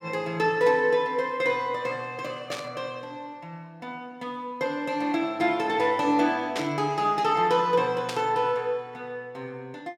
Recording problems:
burst of static; at 2.5 s, at 6.5 s and at 8 s; peak -2 dB vs average level

